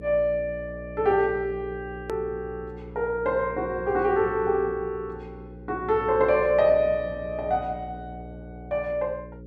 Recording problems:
hum; 60 Hz, harmonics up to 540 Hz, SNR 15 dB
edit click; at 2 s

